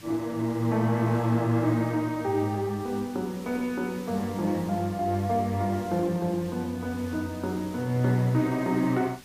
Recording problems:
background hiss; SNR 20 dB

